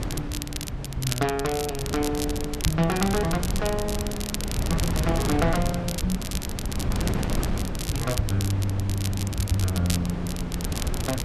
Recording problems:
wind noise; below 270 Hz, SNR 3 dB
crackling; vinyl, SNR 6 dB

